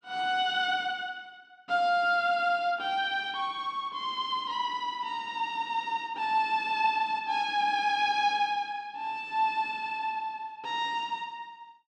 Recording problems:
none

